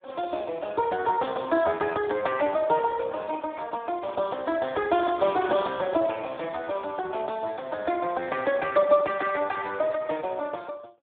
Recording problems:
phone line; 260 Hz to 3.5 kHz, Speex

